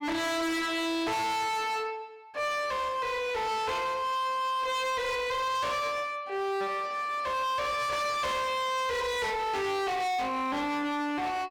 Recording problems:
distorted audio; hard clipping, signal-to-distortion ratio 6 dB

